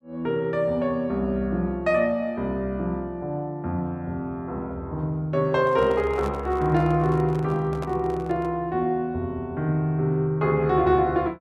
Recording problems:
microphone handling noise; from 5.5 to 8.5 s; peak -7 dB vs average level

